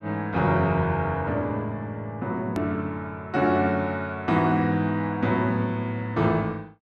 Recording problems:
click at an edit; at 2.5 s

